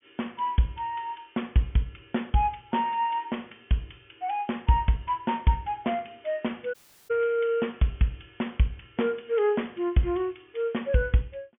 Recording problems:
treble cut off; nothing above 3.4 kHz
audio cutting out; at 6.5 s

